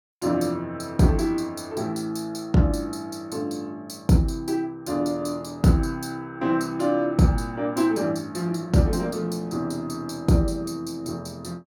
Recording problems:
none

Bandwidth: 17.5 kHz